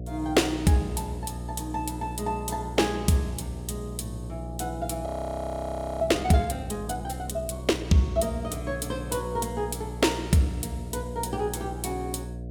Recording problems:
electrical hum; 60 Hz, harmonics up to 720 Hz, SNR 9 dB
frozen audio; at 5 s for 1 s

